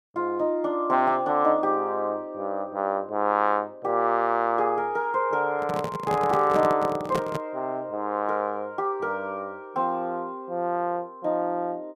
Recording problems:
microphone handling noise; from 5.5 to 7.5 s; peak +1 dB vs average level

